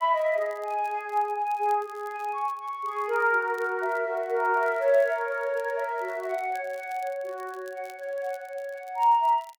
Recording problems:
crackle; vinyl, SNR 28 dB

